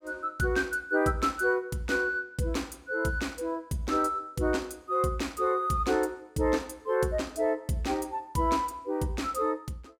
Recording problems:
none

